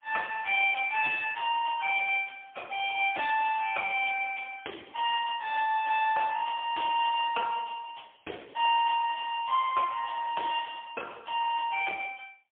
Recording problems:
telephone audio; 370 Hz to 3.4 kHz, AMR-NB, then MP3

